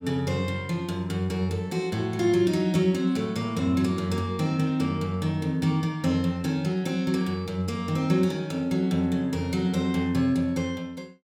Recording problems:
none

